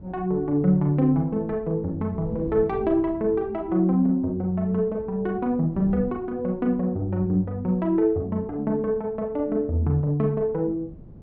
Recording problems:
wind on the microphone; below 240 Hz, SNR 19 dB

